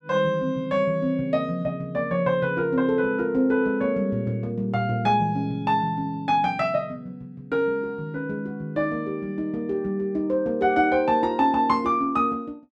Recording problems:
none

